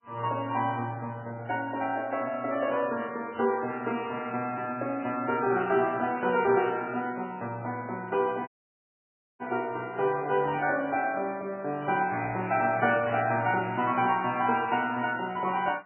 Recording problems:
lossy codec; MP3, log-spectral distance 3 dB, nothing above 2.6 kHz
dropout; at 8.5 s for 1 s

